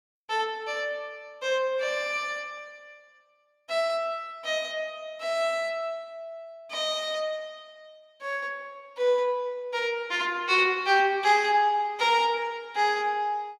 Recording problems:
none

